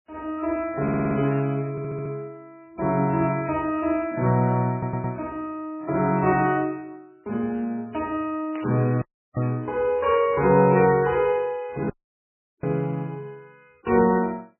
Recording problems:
lossy compression; MP3, log-spectral distance 2 dB, nothing above 2.5 kHz
stutter; at 1 s, at 1.5 s and at 4.5 s
burst of static; at 1.5 s, at 6.5 s and at 8.5 s; peak -10 dB vs average level
dropout; at 9 s and at 12 s for 0.5 s

